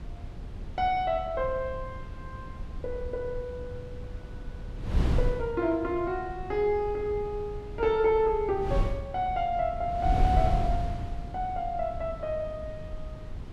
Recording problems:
wind noise; below 110 Hz, SNR 6 dB

